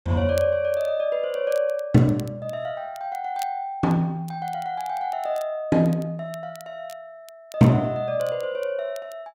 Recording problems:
crackling; vinyl, SNR 25 dB

